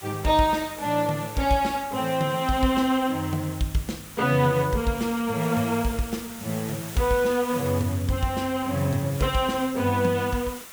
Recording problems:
hiss; SNR 14 dB

